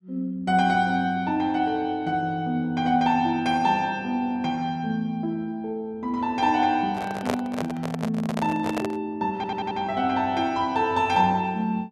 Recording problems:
microphone handling noise; from 7 to 9 s; peak +2 dB vs average level
audio stuttering; at 9.5 s

